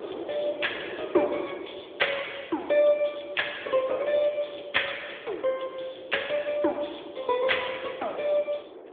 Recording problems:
phone line; 300 Hz to 3.6 kHz, AMR-NB
wind on the microphone; below 610 Hz, SNR 15 dB

